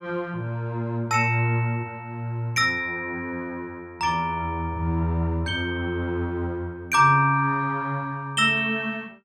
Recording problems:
none

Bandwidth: 16 kHz